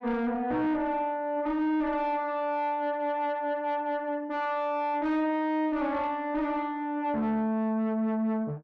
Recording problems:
distorted audio; soft clipping, signal-to-distortion ratio 11 dB

